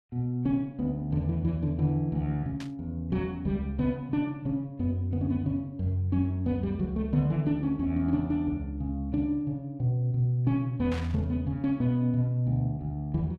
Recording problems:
static burst; at 2.5 s and at 11 s; peak -8 dB vs average level

